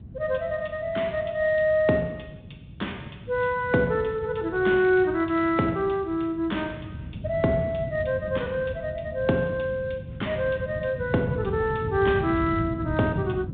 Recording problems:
phone line; 130 Hz to 3.7 kHz, G.726
wind on the microphone; below 180 Hz, SNR 11 dB

